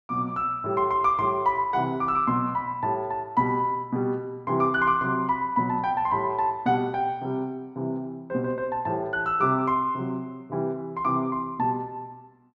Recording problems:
none

